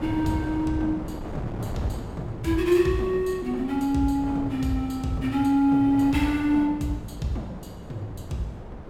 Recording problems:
wind noise; below 450 Hz, SNR 13 dB

